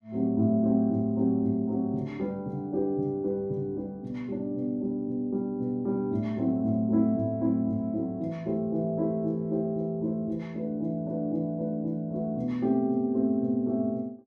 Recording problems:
none

